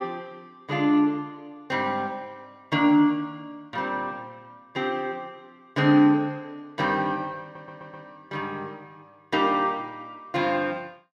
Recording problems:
stutter; at 7.5 s

